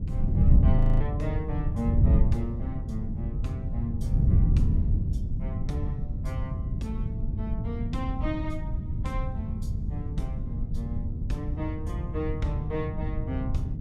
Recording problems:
wind on the microphone; below 120 Hz, SNR -7 dB
audio freezing; at 1 s

